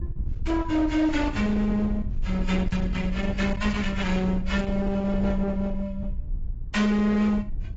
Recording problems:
codec artefacts; AAC, log-spectral distance 2 dB, nothing above 7.3 kHz
distortion; hard clipping, uneven, signal-to-distortion ratio 10 dB
wind on the microphone; below 82 Hz, SNR 8 dB

